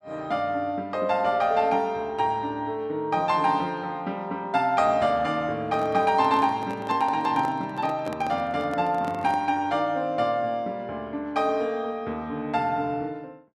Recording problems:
microphone handling noise; from 5.5 to 9.5 s; peak -6 dB vs average level

